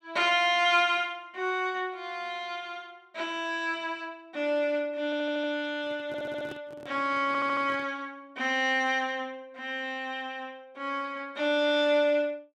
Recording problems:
audio stuttering; at 5 s, at 6 s and at 7.5 s
microphone handling noise; from 6 to 8 s; peak -9 dB vs average level

